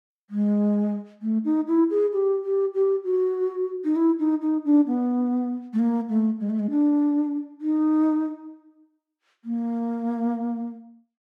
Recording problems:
none

